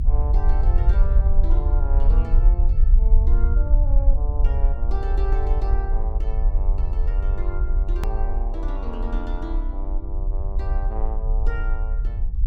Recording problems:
low-frequency rumble; below 52 Hz, SNR -12 dB
edit click; at 8 s

